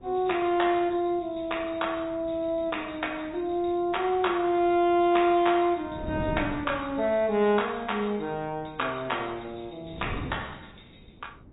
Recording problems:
low-pass filter; nothing above 3.8 kHz
codec artefacts; MP3, log-spectral distance 5 dB
wind noise; below 330 Hz, SNR 17 dB

